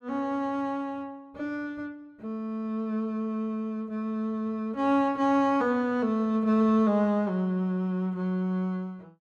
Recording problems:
none

